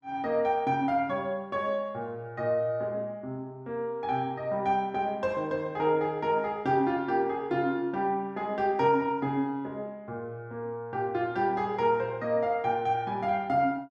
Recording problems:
none

